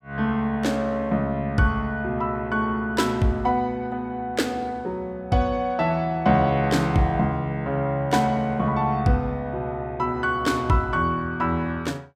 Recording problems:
none

